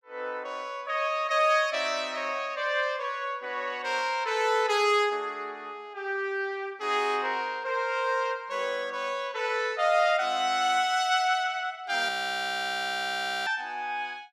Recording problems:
audio freezing; at 12 s for 1.5 s

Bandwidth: 16 kHz